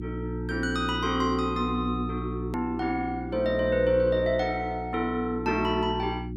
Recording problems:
electrical hum; 60 Hz, harmonics up to 360 Hz, SNR 7 dB
hard cut with a click; at 2.5 s

